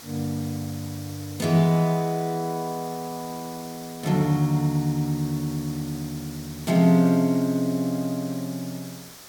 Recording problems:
hiss; SNR 17 dB

